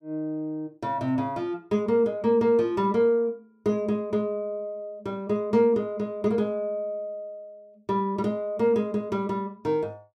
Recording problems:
none

